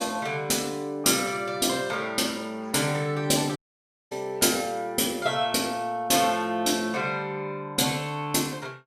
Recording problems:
dropout; at 3.5 s for 0.5 s

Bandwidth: 15.5 kHz